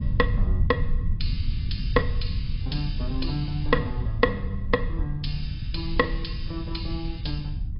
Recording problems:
treble cut off; nothing above 5.2 kHz
lossy codec; AAC, log-spectral distance 3 dB
rumble; below 90 Hz, SNR 1 dB

